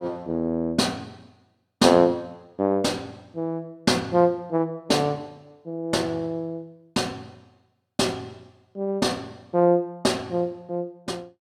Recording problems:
none

